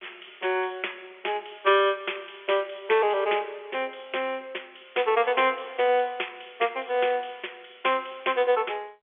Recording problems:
phone line; 300 Hz to 3.5 kHz, G.711

